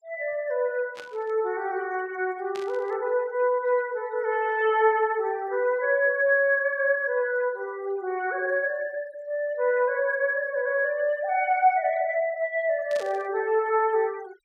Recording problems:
noise reduction artefacts; signal-to-artefact ratio 25 dB
burst of static; at 1 s, at 2.5 s and at 13 s; peak -11 dB vs average level

